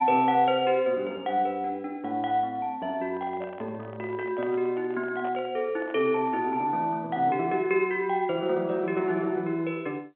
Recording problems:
telephone audio; 220 Hz to 3.6 kHz, G.711
microphone handling noise; from 3 to 6.5 s; peak -7 dB vs average level

